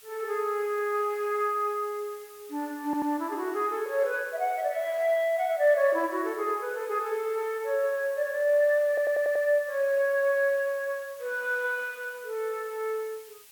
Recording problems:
background hiss; slope +3 dB per octave, SNR 22 dB
stutter; at 3 s and at 9 s

